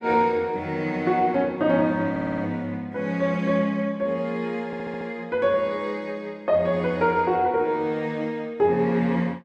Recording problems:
stutter; at 2 s and at 4.5 s

